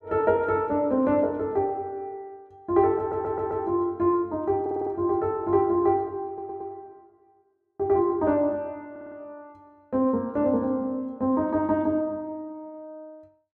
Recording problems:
audio stuttering; 4 times, first at 3 s

